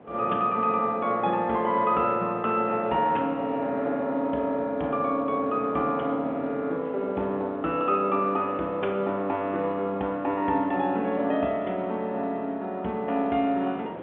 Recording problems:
telephone audio; 190 Hz to 3.8 kHz, G.711
wind noise; below 730 Hz, SNR 21 dB

